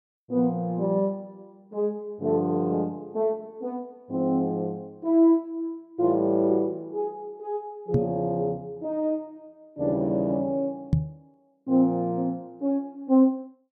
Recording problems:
microphone bump; at 8 s and at 11 s; peak +8 dB vs average level

